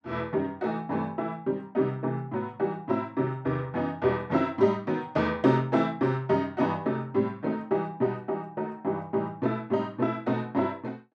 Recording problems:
none

